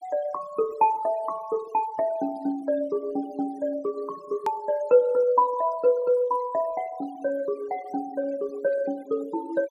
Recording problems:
denoising artefacts; signal-to-artefact ratio 22 dB
hard cut with a click; at 4.5 s

